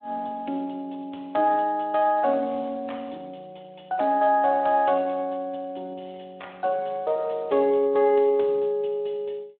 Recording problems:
telephone audio; 240 Hz to 3.7 kHz, Speex

